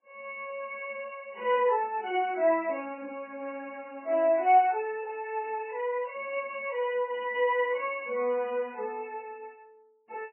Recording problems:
lossy compression; MP3, log-spectral distance 3 dB, nothing above 2.9 kHz

